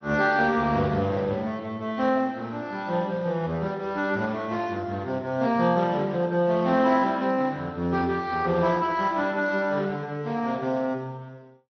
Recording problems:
low-pass filter; nothing above 6 kHz
codec artefacts; Speex, log-spectral distance 3 dB

